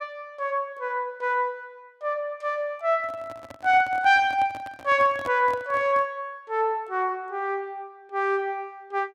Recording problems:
microphone handling noise; from 3 to 6 s; peak -8 dB vs average level

